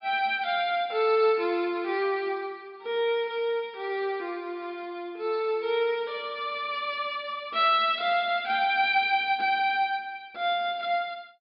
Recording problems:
treble cut off; nothing above 5.5 kHz

